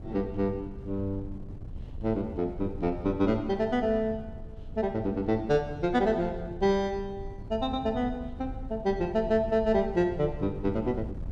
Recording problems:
wind noise; below 120 Hz, SNR 13 dB

